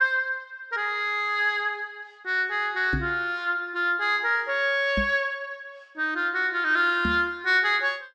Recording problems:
microphone thump; at 3 s, at 5 s and at 7 s; peak -1 dB vs average level

